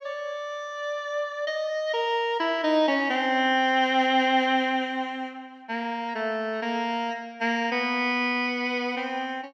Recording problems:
none

